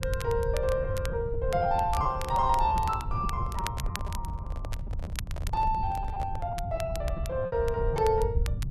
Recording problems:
low-frequency rumble; below 100 Hz, SNR 5 dB
crackle; vinyl, SNR 15 dB
packet loss; 12% of the sound replaced, filled with repeated pitch periods
handling noise; from 3.5 to 6.5 s; peak -8 dB vs average level

